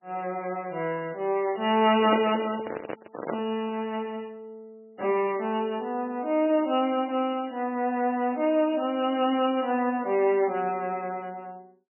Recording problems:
lossy codec; MP3, log-spectral distance 3 dB, nothing above 2.4 kHz
microphone handling noise; from 2 to 3.5 s; peak 0 dB vs average level

